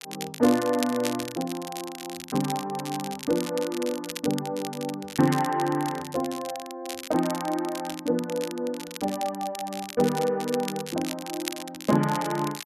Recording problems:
crackling; vinyl, SNR 10 dB

